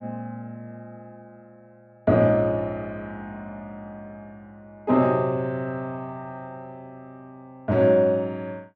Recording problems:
none

